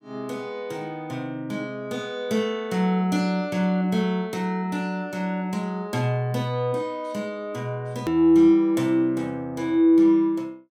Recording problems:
click at an edit; at 8 s

